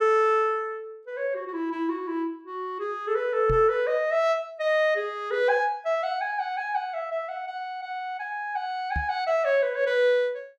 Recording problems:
knock on the microphone; at 3.5 s and at 9 s; peak -1 dB vs average level

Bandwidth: 14 kHz